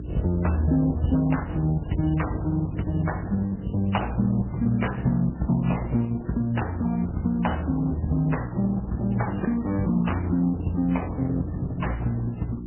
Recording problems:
codec artefacts; Opus, then MP3, log-spectral distance 4 dB, nothing above 3 kHz
hum; 60 Hz, harmonics up to 360 Hz, SNR 9 dB

